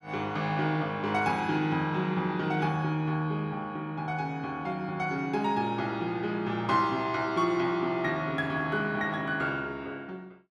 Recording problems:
none

